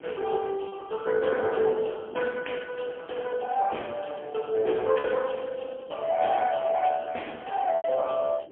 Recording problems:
telephone audio; 300 Hz to 3.2 kHz, AMR-NB, then MP3
wind noise; below 490 Hz, SNR 19 dB
lost packets; 1.9% of the sound replaced, filled with repeated pitch periods

